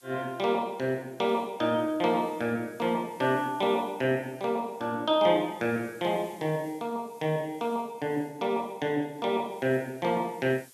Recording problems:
hiss; slope +1 dB per octave, SNR 27 dB

